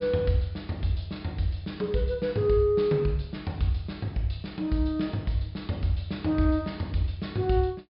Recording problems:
treble missing; nothing above 5.5 kHz

